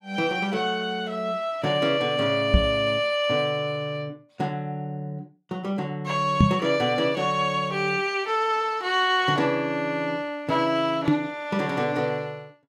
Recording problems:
microphone bump; at 2.5 s, at 6.5 s and at 11 s; peak +9 dB vs average level

